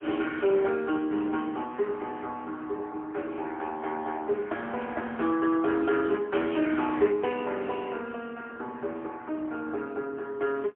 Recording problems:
telephone audio; 260 Hz to 3.4 kHz, AMR-NB, then MP3

